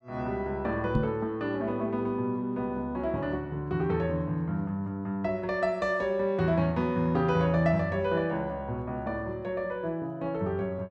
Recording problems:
microphone thump; at 1 s; peak +6 dB vs average level

